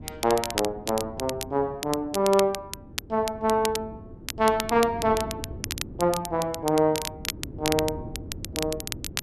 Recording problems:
wind on the microphone; below 300 Hz, SNR 15 dB
crackle; vinyl, SNR 8 dB

